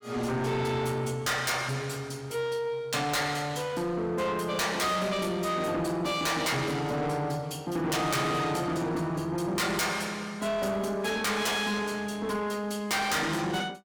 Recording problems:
distorted audio; soft clipping, signal-to-distortion ratio 6 dB

